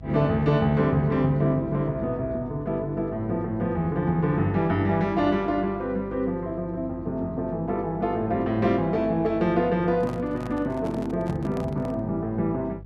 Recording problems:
hum; 50 Hz, harmonics up to 500 Hz, SNR 17 dB
handling noise; from 10 to 12 s; peak -9 dB vs average level

